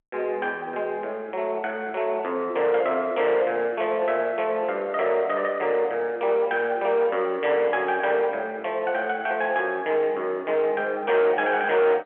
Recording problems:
phone line; 320 Hz to 3.8 kHz, G.711
distorted audio; soft clipping, signal-to-distortion ratio 12 dB

